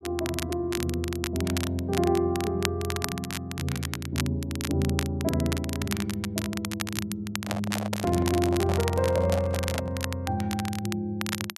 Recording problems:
crackle; vinyl, SNR 7 dB
handling noise; from 7.5 to 10 s; peak -1 dB vs average level

